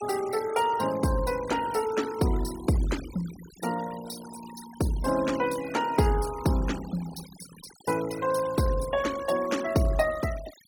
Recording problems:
noise reduction artefacts; signal-to-artefact ratio 15 dB

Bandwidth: 17.5 kHz